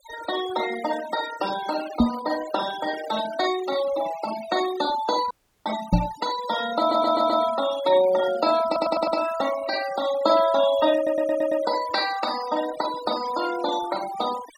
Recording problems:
denoising artefacts; signal-to-artefact ratio 12 dB
knock on the microphone; at 2 s and at 6 s; peak +9 dB vs average level
audio cutting out; at 5.5 s
stutter; at 7 s, at 8.5 s and at 11 s

